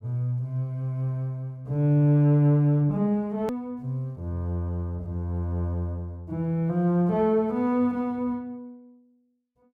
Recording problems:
hard cut with a click; at 3.5 s

